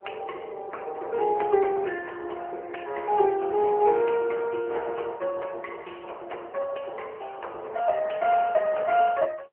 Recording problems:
telephone audio; 340 Hz to 3.1 kHz, AMR-NB

